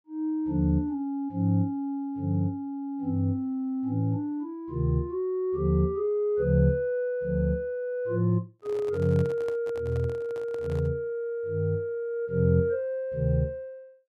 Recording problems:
microphone handling noise; from 8.5 to 11 s; peak -10 dB vs average level

